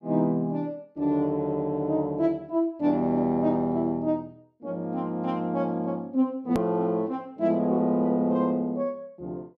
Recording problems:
edit click; at 6.5 s

